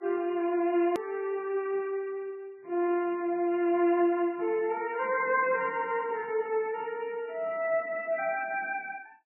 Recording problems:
codec artefacts; MP3, then Vorbis, log-spectral distance 3 dB, nothing above 2.4 kHz
edit click; at 1 s

